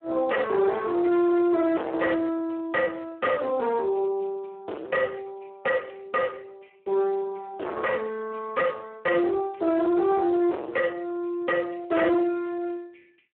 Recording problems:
phone line; 280 Hz to 2.6 kHz, Speex
distortion; hard clipping, uneven, signal-to-distortion ratio 5 dB

